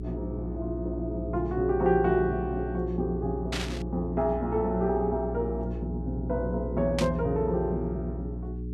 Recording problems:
hum; 60 Hz, harmonics up to 420 Hz, SNR 6 dB
static burst; at 3.5 s and at 7 s; peak +1 dB vs average level

